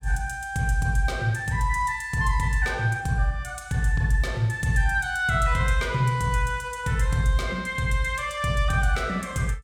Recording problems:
none

